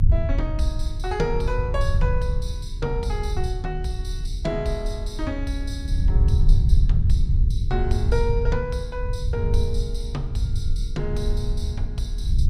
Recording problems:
electrical hum; 60 Hz, harmonics up to 420 Hz, SNR 18 dB
rumble; below 78 Hz, SNR -4 dB

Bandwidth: 15 kHz